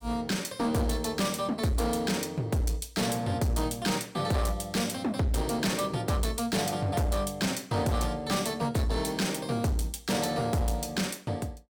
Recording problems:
distorted audio; hard clipping, uneven, signal-to-distortion ratio 10 dB

